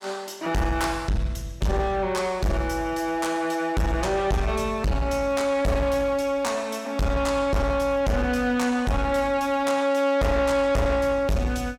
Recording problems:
distorted audio; soft clipping, signal-to-distortion ratio 7 dB

